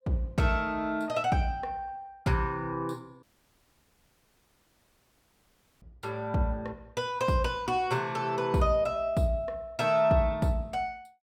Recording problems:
dropout; at 3 s for 2.5 s

